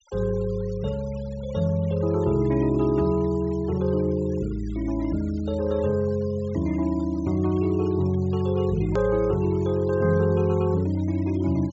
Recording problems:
treble missing; nothing above 8 kHz
noise reduction artefacts; signal-to-artefact ratio 24 dB
click at an edit; at 9 s

